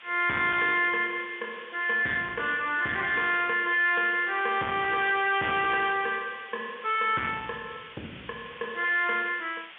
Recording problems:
telephone audio; 190 Hz to 3.5 kHz, G.711
distortion; soft clipping, signal-to-distortion ratio 10 dB
hiss; SNR 19 dB

